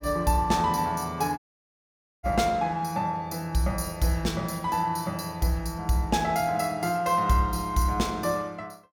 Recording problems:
audio cutting out; at 1.5 s for 1 s

